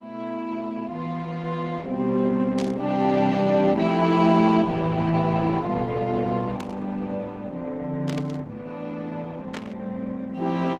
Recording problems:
lossy compression; Opus, then Opus, log-spectral distance 3 dB
static burst; 4 times, first at 2.5 s; peak -7 dB vs average level

